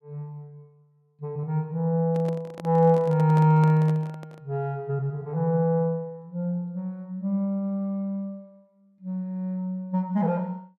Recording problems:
handling noise; from 2 to 4.5 s; peak -8 dB vs average level

